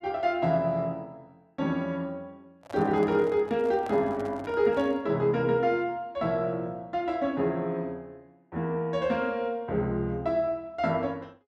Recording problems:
handling noise; from 2.5 to 5 s; peak -9 dB vs average level

